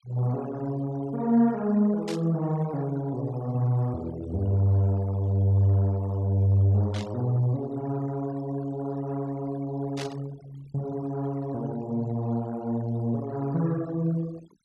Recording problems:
denoising artefacts; signal-to-artefact ratio 22 dB
burst of static; at 2 s, at 7 s and at 10 s; peak -7 dB vs average level

